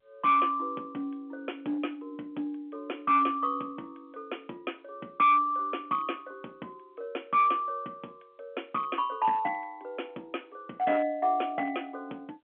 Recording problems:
telephone audio; 190 Hz to 3.7 kHz, G.711
distorted audio; hard clipping, signal-to-distortion ratio 12 dB

